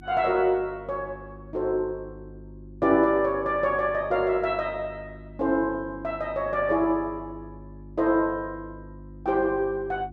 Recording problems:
hum; 50 Hz, harmonics up to 350 Hz, SNR 19 dB

